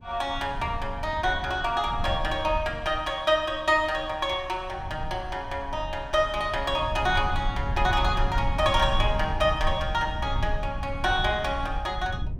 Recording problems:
rumble; below 86 Hz, SNR 7 dB

